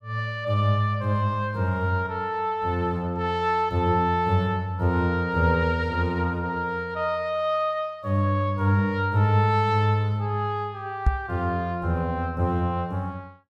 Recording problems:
microphone thump; at 11 s; peak +7 dB vs average level

